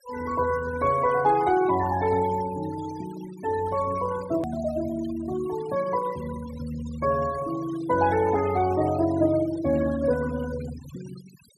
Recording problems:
noise reduction artefacts; signal-to-artefact ratio 16 dB
hard cut with a click; at 4.5 s

